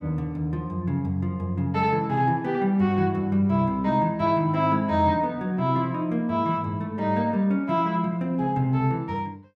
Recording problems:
none

